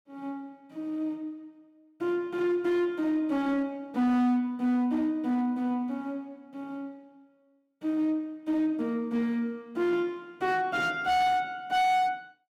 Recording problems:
distortion; hard clipping, signal-to-distortion ratio 11 dB

